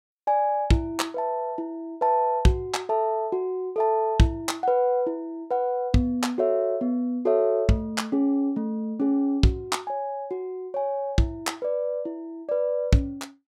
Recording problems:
none

